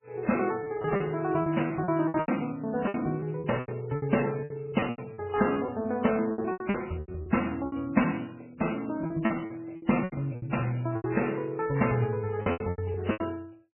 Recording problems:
lossy codec; MP3, then MP3, log-spectral distance 5 dB, nothing above 2.8 kHz
lost packets; 15% of the sound replaced, filled with repeated pitch periods

